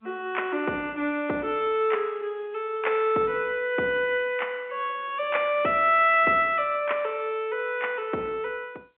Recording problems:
telephone audio; 240 Hz to 3.3 kHz, G.711

